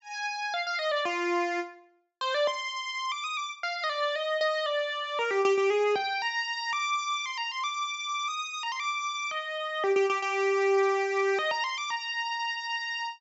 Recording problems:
treble cut off; nothing above 8 kHz

